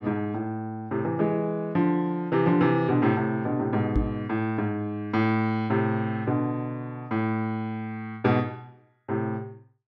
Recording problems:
microphone thump; at 4 s; peak +3 dB vs average level

